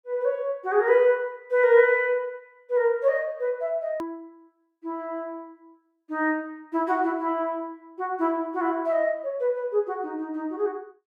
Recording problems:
hard cut with a click; at 4 s

